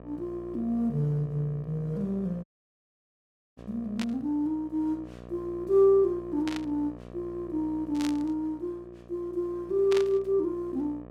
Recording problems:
hum; 60 Hz, harmonics up to 1.3 kHz, SNR 17 dB
dropout; at 2.5 s for 1 s
burst of static; 4 times, first at 4 s; peak -3 dB vs average level

